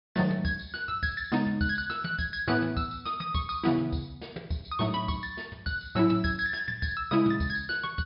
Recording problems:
treble missing; nothing above 5.5 kHz

